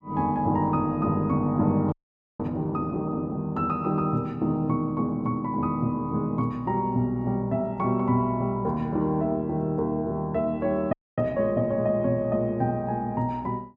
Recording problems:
frozen audio; at 2 s and at 11 s

